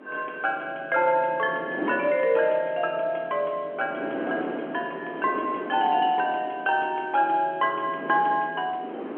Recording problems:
phone line; 260 Hz to 3.3 kHz, G.711
wind on the microphone; below 600 Hz, SNR 11 dB

